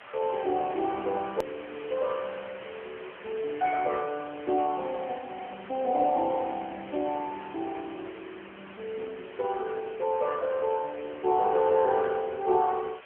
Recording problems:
telephone audio; 300 Hz to 2.2 kHz, AMR-NB
background hiss; SNR 17 dB
hard cut with a click; at 1.5 s

